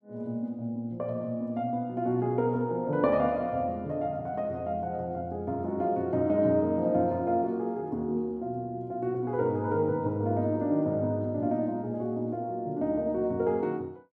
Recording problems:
none

